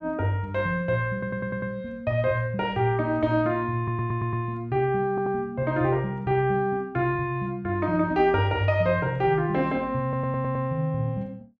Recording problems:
audio stuttering; 4 times, first at 1 s

